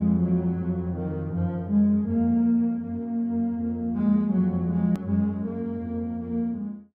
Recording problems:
edit click; at 5 s

